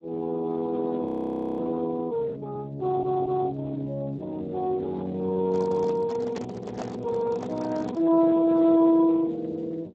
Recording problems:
lossy compression; Speex, log-spectral distance 2 dB
audio freezing; at 1 s for 0.5 s
audio stuttering; at 3 s
handling noise; from 5.5 to 8 s; peak -6 dB vs average level

